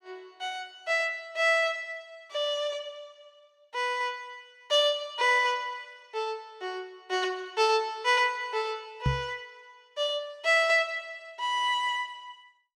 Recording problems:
microphone bump; at 9 s; peak +4 dB vs average level

